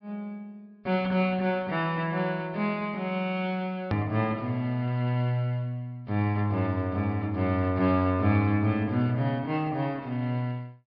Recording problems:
treble missing; nothing above 5.5 kHz
hard cut with a click; at 4 s

